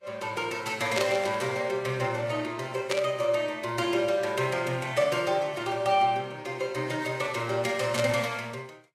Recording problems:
lossy compression; Vorbis, log-spectral distance 3 dB, nothing above 13.1 kHz
static burst; at 1 s, at 3 s and at 8 s; peak +2 dB vs average level

